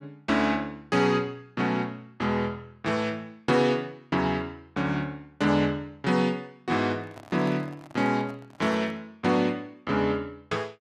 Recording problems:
microphone handling noise; from 7 to 9 s; peak -10 dB vs average level

